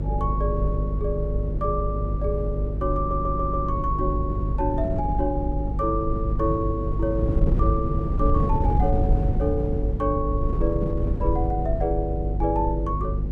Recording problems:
hum; 50 Hz, harmonics up to 550 Hz, SNR 1 dB
wind noise; below 120 Hz, SNR 2 dB
audio stuttering; at 3 s

